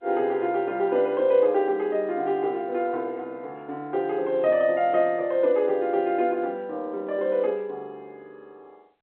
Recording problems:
telephone audio; 220 Hz to 3.8 kHz, G.711

